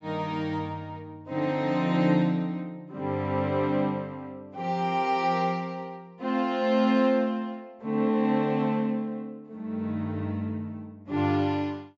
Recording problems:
treble cut off; nothing above 8 kHz

